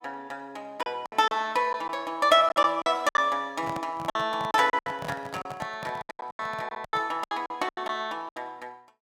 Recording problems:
packet loss; 13% of the sound replaced, filled with silence
microphone handling noise; from 3.5 to 7 s; peak -5 dB vs average level

